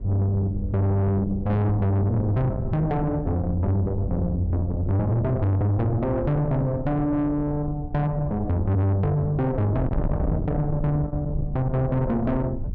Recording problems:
distorted audio; soft clipping, signal-to-distortion ratio 7 dB
wind noise; below 160 Hz, SNR 8 dB

